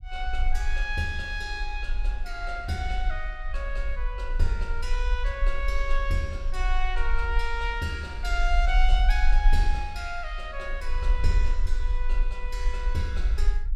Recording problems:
rumble; below 42 Hz, strongest tone 20 Hz, SNR -2 dB

